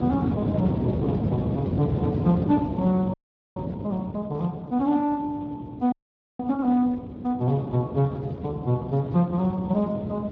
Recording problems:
lossy codec; Speex, log-spectral distance 2 dB
wind noise; below 330 Hz, SNR 4 dB
audio freezing; at 3 s and at 6 s

